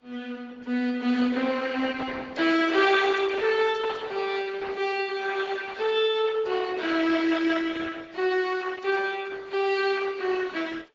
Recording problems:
lossy codec; Opus, then AAC, log-spectral distance 5 dB

